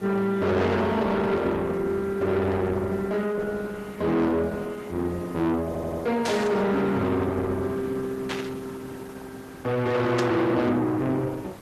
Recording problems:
codec artefacts; Opus, log-spectral distance 3 dB, nothing above 13.1 kHz
distorted audio; soft clipping, signal-to-distortion ratio 7 dB
background hiss; slope -6 dB per octave, SNR 20 dB
audio stuttering; at 5.5 s
burst of static; at 6.5 s, at 8.5 s and at 10 s; peak -1 dB vs average level

